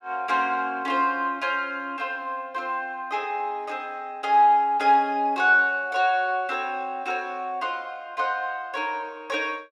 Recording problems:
none

